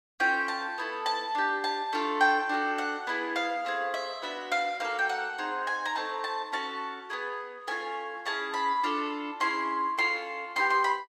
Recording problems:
none

